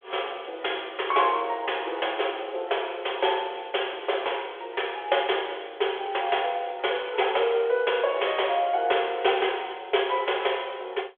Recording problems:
telephone audio; 340 Hz to 3.5 kHz, G.726

